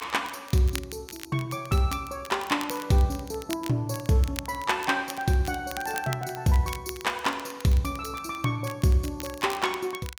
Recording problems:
crackling; vinyl, SNR 14 dB

